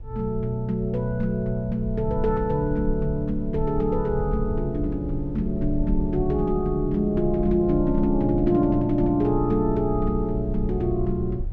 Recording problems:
low-frequency rumble; below 60 Hz, strongest tone 22 Hz, SNR 9 dB

